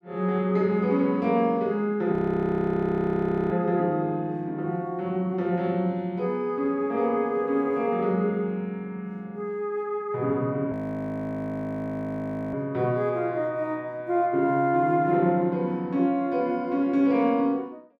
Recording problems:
audio freezing; at 2 s for 1.5 s and at 11 s for 2 s

